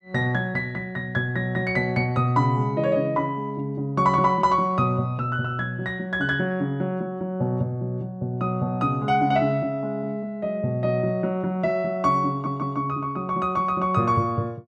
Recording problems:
stutter; at 12 s

